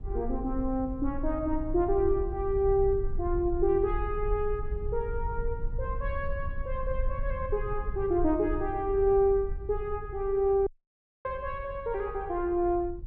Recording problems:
rumble; below 58 Hz, SNR 8 dB
audio cutting out; at 11 s for 0.5 s

